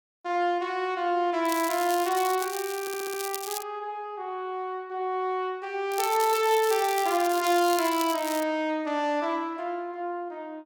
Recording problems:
crackling; from 1.5 to 3.5 s and from 6 to 8.5 s; loose cable, SNR 9 dB
stutter; at 3 s

